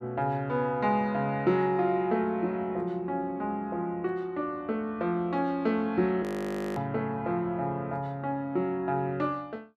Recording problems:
frozen audio; at 6 s for 0.5 s

